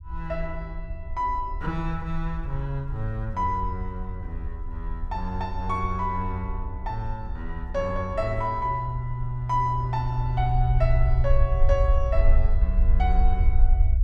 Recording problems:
rumble; below 58 Hz, SNR 0 dB

